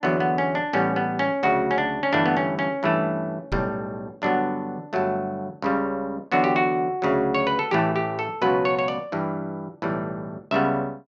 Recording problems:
knock on the microphone; at 3.5 s; peak -3 dB vs average level

